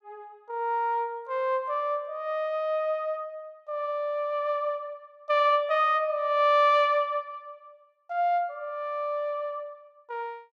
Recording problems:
none

